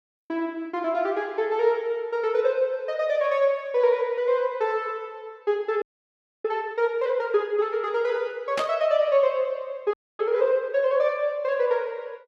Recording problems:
audio freezing; at 6 s for 0.5 s and at 10 s
static burst; at 8.5 s; peak -1 dB vs average level

